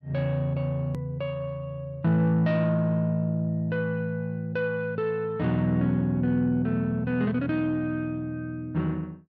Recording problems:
click at an edit; at 1 s

